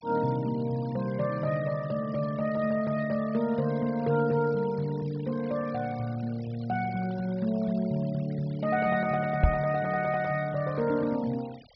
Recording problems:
treble cut off; nothing above 5.5 kHz
denoising artefacts; signal-to-artefact ratio 22 dB
microphone bump; at 9.5 s; peak +10 dB vs average level

